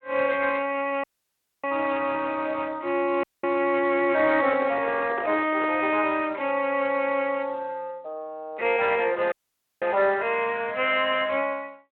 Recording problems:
phone line; 320 Hz to 3.3 kHz, Speex
audio cutting out; at 1 s for 0.5 s, at 3 s and at 9.5 s for 0.5 s
microphone handling noise; from 4.5 to 5.5 s; peak -5 dB vs average level

